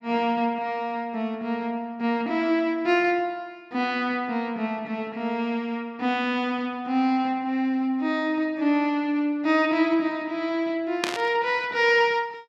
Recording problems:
burst of static; at 11 s; peak +3 dB vs average level

